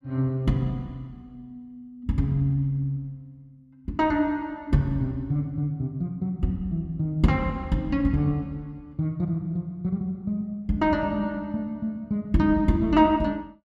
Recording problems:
none

